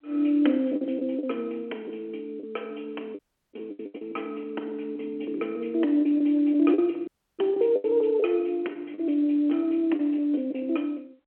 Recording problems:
phone line; 260 Hz to 3.8 kHz, G.711
lost packets; 7% of the sound replaced, filled with the last packet
dropout; at 3 s and at 7 s

